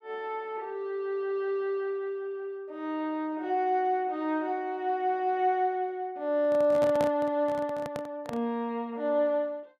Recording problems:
microphone handling noise; from 6.5 to 8.5 s; peak -1 dB vs average level

